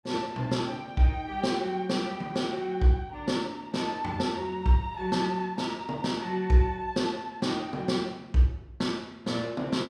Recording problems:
none

